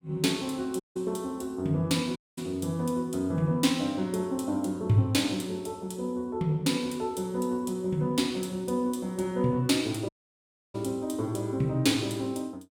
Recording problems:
dropout; at 1 s, at 2 s and at 10 s for 0.5 s

